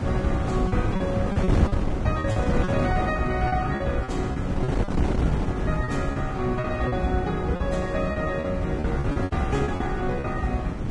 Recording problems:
codec artefacts; Vorbis, log-spectral distance 2 dB, nothing above 10.1 kHz
hum; 60 Hz, harmonics up to 600 Hz, SNR 21 dB
wind on the microphone; below 290 Hz, SNR 1 dB
packet loss; 11% of the sound replaced, filled with repeated pitch periods

